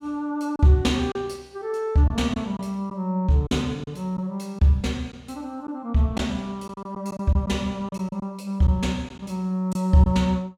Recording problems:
lost packets; 5% of the sound replaced, filled with silence

